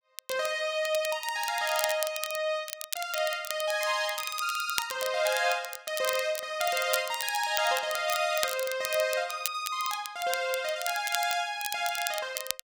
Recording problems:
crackling; vinyl, SNR 7 dB

